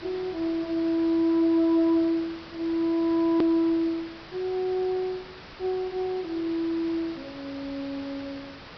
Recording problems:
treble missing; nothing above 5.5 kHz
hiss; SNR 17 dB
click at an edit; at 3.5 s

